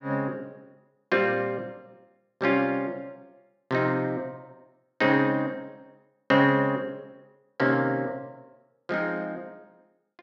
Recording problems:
none

